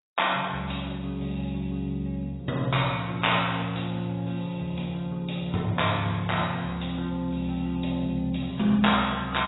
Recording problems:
codec artefacts; AAC, log-spectral distance 8 dB, nothing above 3.8 kHz

